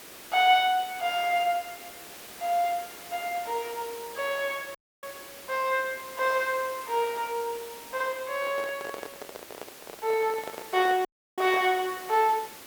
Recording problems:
background hiss; slope -3 dB per octave, SNR 15 dB
dropout; at 5 s and at 11 s
microphone handling noise; from 8.5 to 12 s; peak -7 dB vs average level

